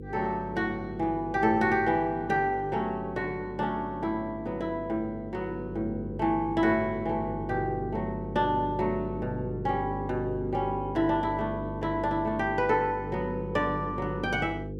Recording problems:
hum; 50 Hz, harmonics up to 500 Hz, SNR 9 dB

